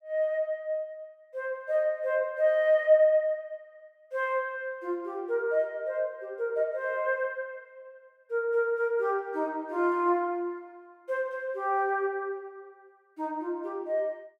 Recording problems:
none

